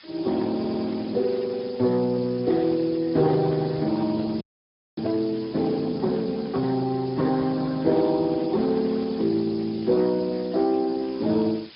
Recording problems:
low-pass filter; nothing above 5.5 kHz
lossy compression; Speex, log-spectral distance 11 dB
hiss; SNR 21 dB
audio stuttering; at 0.5 s
frozen audio; at 4.5 s for 0.5 s

